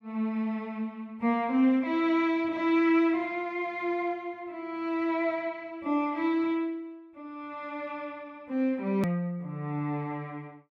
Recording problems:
hard cut with a click; at 9 s

